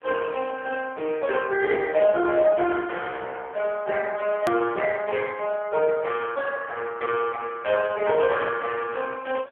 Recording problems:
phone line; 300 Hz to 3.3 kHz, AMR-NB
edit click; at 4.5 s

